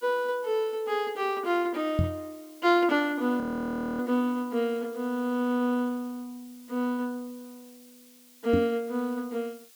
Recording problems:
background hiss; slope +2 dB per octave, SNR 24 dB
microphone bump; at 2 s and at 8.5 s; peak +5 dB vs average level
audio freezing; at 3.5 s for 0.5 s

